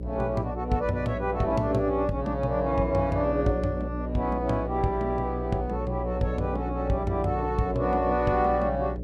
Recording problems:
mains hum; 60 Hz, harmonics up to 600 Hz, SNR 7 dB

